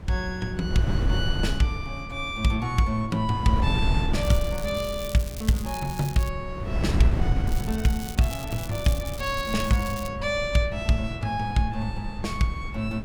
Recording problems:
wind noise; below 130 Hz, SNR 5 dB
crackling; from 4 to 6.5 s and from 7.5 to 10 s; loose cable, SNR 14 dB

